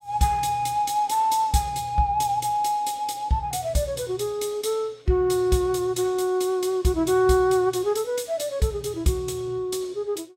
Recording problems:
none

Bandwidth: 16 kHz